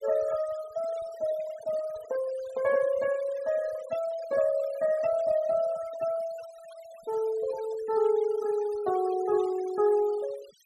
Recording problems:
denoising artefacts; signal-to-artefact ratio 18 dB

